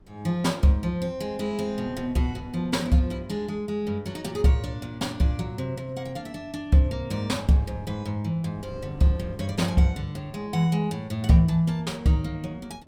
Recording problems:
wind noise; below 250 Hz, SNR 23 dB

